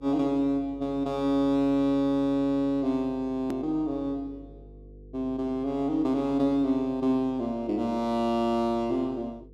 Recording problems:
hum; 50 Hz, harmonics up to 500 Hz, SNR 23 dB
edit click; at 3.5 s

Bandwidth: 13.5 kHz